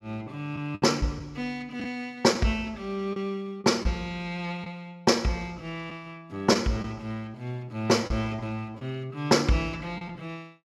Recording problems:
packet loss; 4% of the sound replaced, filled with the last packet

